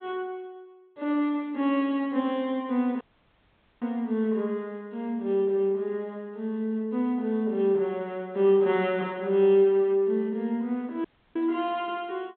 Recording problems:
treble missing; nothing above 4 kHz
audio cutting out; at 3 s for 1 s and at 11 s

